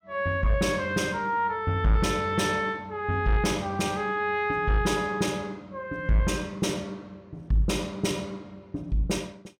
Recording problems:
distortion; soft clipping, signal-to-distortion ratio 11 dB

